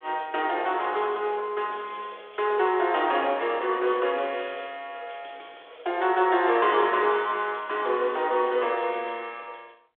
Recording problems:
phone line; 320 Hz to 3.6 kHz, G.726

